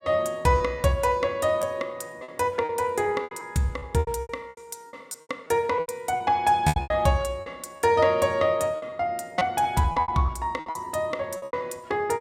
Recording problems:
packet loss; 13% of the sound replaced, filled with repeated pitch periods

